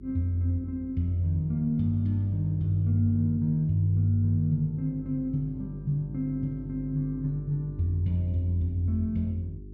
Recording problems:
hum; 50 Hz, harmonics up to 400 Hz, SNR 16 dB

